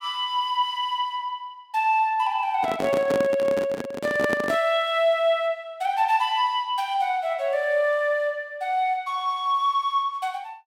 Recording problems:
handling noise; from 2.5 to 4.5 s; peak +1 dB vs average level

